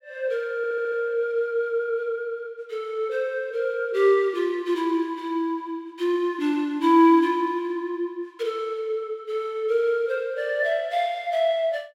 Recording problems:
audio stuttering; at 0.5 s

